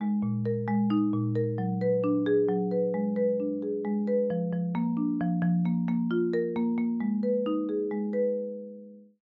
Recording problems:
none

